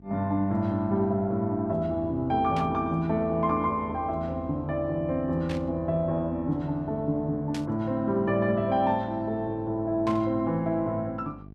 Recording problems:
electrical hum; 50 Hz, harmonics up to 750 Hz, SNR 20 dB
burst of static; 4 times, first at 2.5 s; peak -8 dB vs average level

